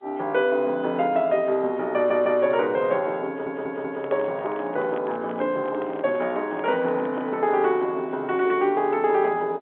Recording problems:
telephone audio; 240 Hz to 3.5 kHz, G.711
audio stuttering; at 2 s and at 3.5 s
microphone handling noise; from 3.5 to 7.5 s; peak -7 dB vs average level

